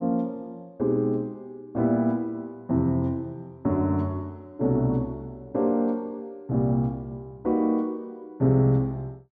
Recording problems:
none

